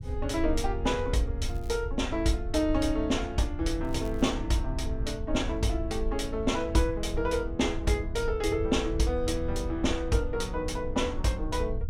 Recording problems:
rumble; below 74 Hz, SNR 7 dB
crackle; at 1.5 s and at 4 s; loose cable, SNR 28 dB

